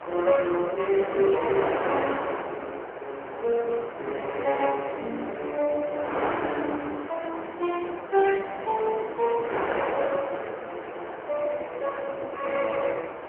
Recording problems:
telephone audio; 280 Hz to 2.8 kHz, AMR-NB
wind on the microphone; below 1.3 kHz, SNR 6 dB

